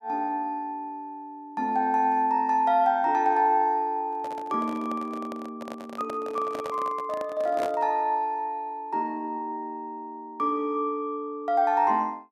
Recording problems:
microphone handling noise; from 4 to 8 s; peak -2 dB vs average level

